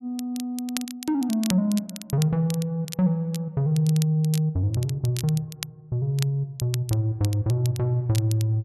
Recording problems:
crackle; vinyl, SNR 14 dB

